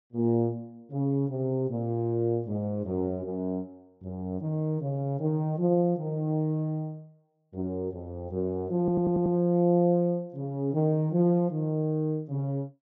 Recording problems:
treble missing; nothing above 8 kHz
audio stuttering; at 9 s

